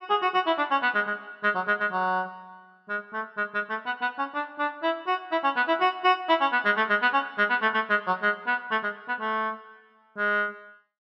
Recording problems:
none

